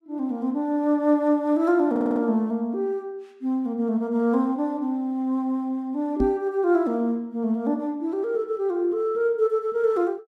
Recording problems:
audio stuttering; at 2 s
microphone bump; at 6 s; peak +4 dB vs average level

